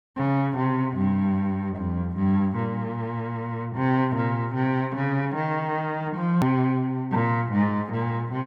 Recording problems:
hard cut with a click; at 6.5 s

